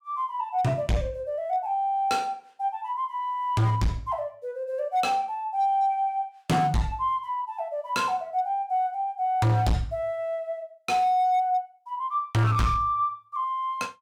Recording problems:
distortion; hard clipping, signal-to-distortion ratio 7 dB

